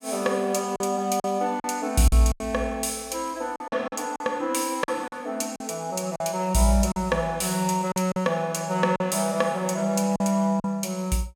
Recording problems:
lost packets; 7% of the sound replaced, filled with silence

